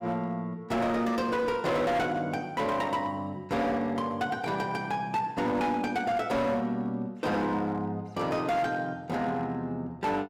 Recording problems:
distortion; hard clipping, signal-to-distortion ratio 10 dB

